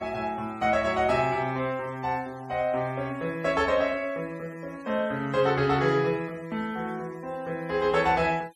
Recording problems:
noise reduction artefacts; signal-to-artefact ratio 26 dB

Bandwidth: 13.5 kHz